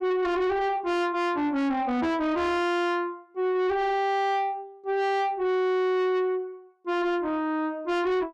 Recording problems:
distorted audio; soft clipping, signal-to-distortion ratio 7 dB

